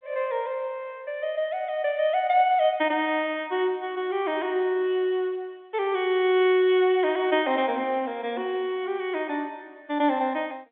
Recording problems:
phone line; 240 Hz to 3.7 kHz, G.711

